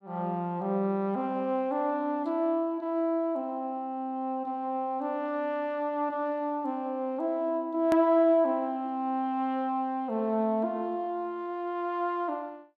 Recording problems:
edit click; at 8 s

